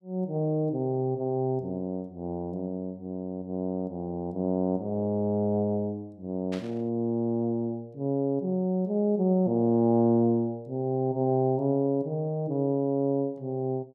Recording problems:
static burst; at 6.5 s; peak -10 dB vs average level

